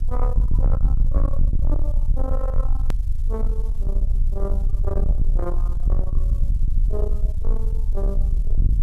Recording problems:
distorted audio; soft clipping, signal-to-distortion ratio 8 dB
hiss; slope -2 dB per octave, SNR 22 dB
low-frequency rumble; below 50 Hz, SNR -10 dB
edit click; at 3 s

